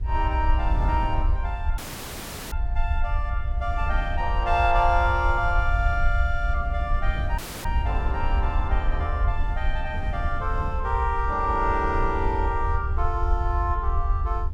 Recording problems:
low-frequency rumble; below 68 Hz, SNR 1 dB
wind on the microphone; below 140 Hz, SNR 11 dB
audio cutting out; at 2 s for 0.5 s and at 7.5 s

